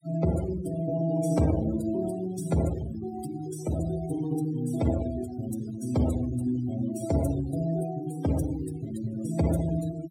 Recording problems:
noise reduction artefacts; signal-to-artefact ratio 13 dB

